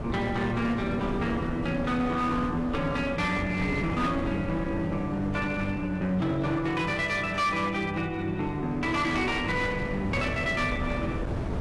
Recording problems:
lossy codec; AAC, log-spectral distance 2 dB, nothing above 11.6 kHz
distortion; hard clipping, uneven, signal-to-distortion ratio 11 dB
wind noise; below 390 Hz, SNR 8 dB

